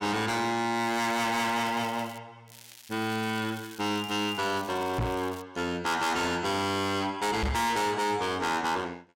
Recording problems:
distorted audio; hard clipping, signal-to-distortion ratio 6 dB
crackle; from 1 to 2 s and from 2.5 to 5.5 s; loose cable, SNR 19 dB
microphone bump; at 5 s and at 7.5 s; peak +3 dB vs average level

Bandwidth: 16.5 kHz